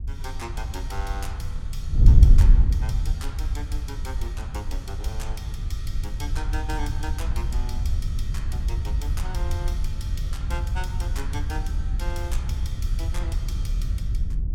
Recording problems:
wind on the microphone; below 76 Hz, SNR -11 dB

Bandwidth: 17 kHz